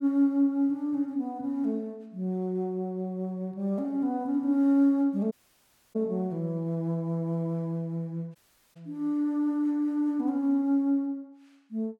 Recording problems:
audio cutting out; at 5.5 s for 0.5 s and at 8.5 s

